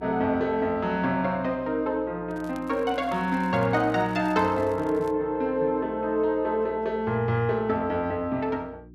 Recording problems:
electrical hum; 60 Hz, harmonics up to 360 Hz, SNR 22 dB
crackling; from 2.5 to 5 s; loose cable, SNR 28 dB

